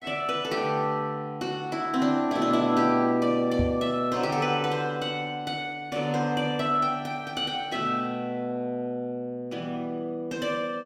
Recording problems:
microphone thump; at 3.5 s; peak +2 dB vs average level

